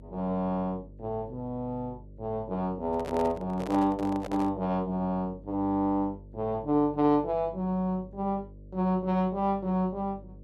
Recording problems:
electrical hum; 50 Hz, harmonics up to 600 Hz, SNR 19 dB
microphone handling noise; from 3 to 4.5 s; peak -5 dB vs average level

